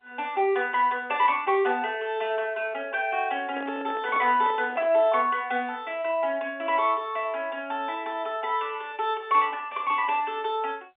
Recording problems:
telephone audio; 260 Hz to 3.6 kHz, G.711
microphone handling noise; from 3.5 to 5 s; peak -8 dB vs average level

